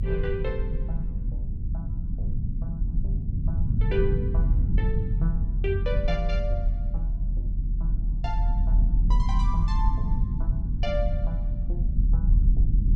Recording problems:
low-frequency rumble; below 72 Hz, strongest tone 40 Hz, SNR -8 dB

